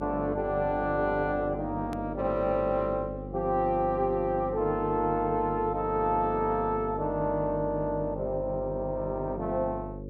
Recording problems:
hum; 50 Hz, harmonics up to 550 Hz, SNR 10 dB
hard cut with a click; at 2 s

